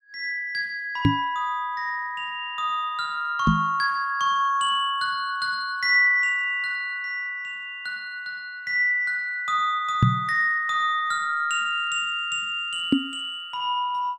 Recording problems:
knock on the microphone; 4 times, first at 1 s; peak +9 dB vs average level

